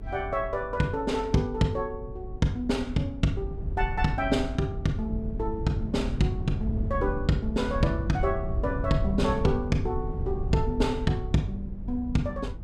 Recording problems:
rumble; below 110 Hz, SNR 5 dB

